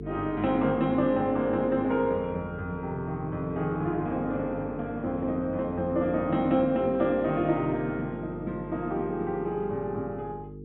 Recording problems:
low-pass filter; nothing above 3.8 kHz
hum; 50 Hz, harmonics up to 450 Hz, SNR 13 dB

